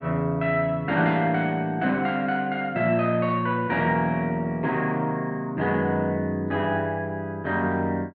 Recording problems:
none

